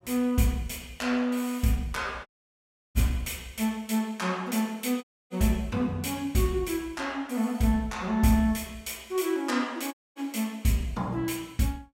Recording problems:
audio cutting out; at 2.5 s for 0.5 s, at 5 s and at 10 s

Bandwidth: 16.5 kHz